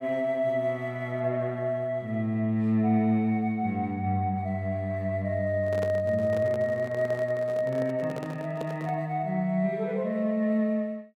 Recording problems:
handling noise; from 5.5 to 9 s; peak -4 dB vs average level

